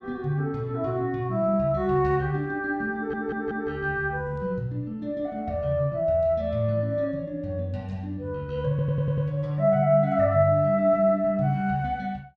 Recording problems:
stutter; at 3 s and at 8.5 s

